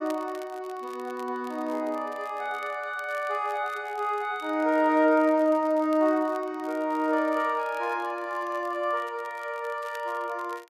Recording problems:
crackle; vinyl, SNR 26 dB

